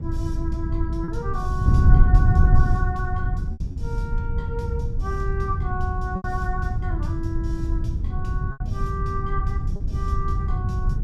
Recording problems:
wind noise; below 100 Hz, SNR -8 dB
packet loss; 3% of the sound replaced, filled with repeated pitch periods

